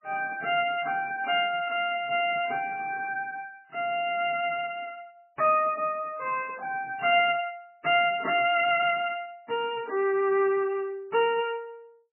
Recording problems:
codec artefacts; MP3, log-spectral distance 3 dB, nothing above 2.8 kHz

